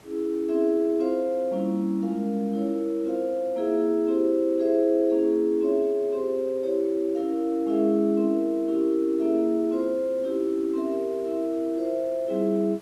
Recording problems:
background hiss; slope -5 dB per octave, SNR 28 dB

